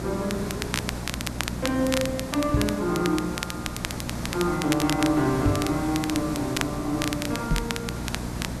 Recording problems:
hum; 60 Hz, harmonics up to 660 Hz, SNR 10 dB
hiss; slope -5 dB per octave, SNR 8 dB
crackling; vinyl, SNR 6 dB
microphone thump; at 2.5 s, at 5.5 s and at 7.5 s; peak +5 dB vs average level

